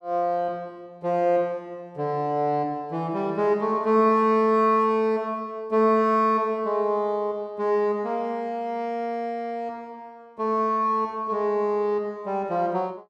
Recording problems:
none

